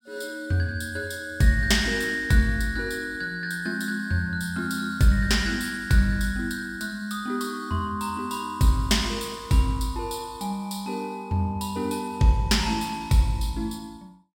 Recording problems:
none

